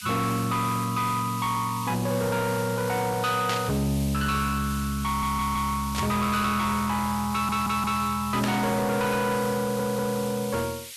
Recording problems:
distortion; soft clipping, signal-to-distortion ratio 11 dB
background hiss; SNR 12 dB
static burst; at 3.5 s, at 6 s and at 8.5 s; peak -1 dB vs average level
stutter; at 5 s, at 7.5 s and at 9.5 s

